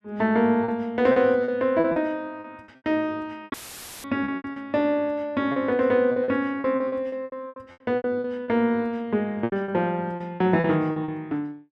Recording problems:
packet loss; 13% of the sound replaced, filled with repeated pitch periods
dropout; at 3.5 s for 0.5 s; filled with static

